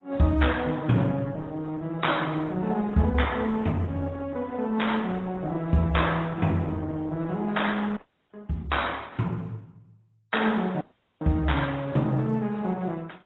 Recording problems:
lossy compression; AAC, then Opus, log-spectral distance 3 dB, nothing above 3.8 kHz
dropout; at 8 s and at 11 s

